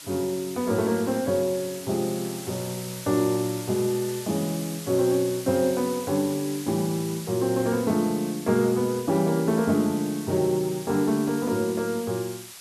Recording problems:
background hiss; slope +2 dB per octave, SNR 13 dB

